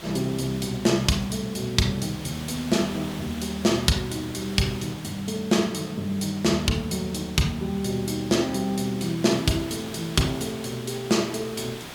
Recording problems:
hiss; SNR 14 dB

